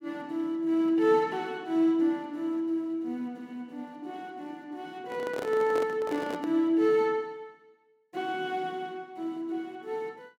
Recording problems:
handling noise; from 5 to 6.5 s; peak -3 dB vs average level

